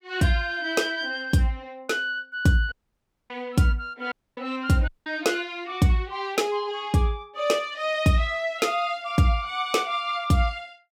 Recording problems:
audio cutting out; at 2.5 s for 0.5 s, at 4 s and at 5 s

